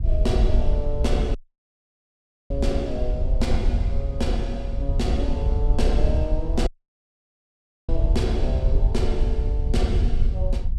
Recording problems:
wind noise; below 64 Hz, SNR -4 dB
dropout; at 1.5 s for 1 s and at 6.5 s for 1 s

